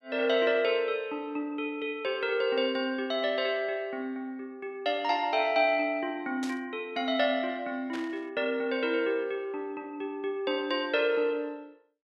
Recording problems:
static burst; at 6.5 s and at 8 s; peak -7 dB vs average level

